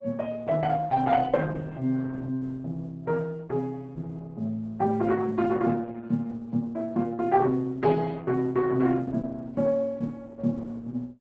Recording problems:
lossy compression; Opus, log-spectral distance 3 dB, nothing above 7.6 kHz

